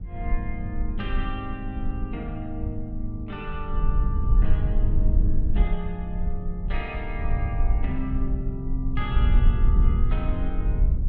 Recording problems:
rumble; below 60 Hz, SNR -7 dB

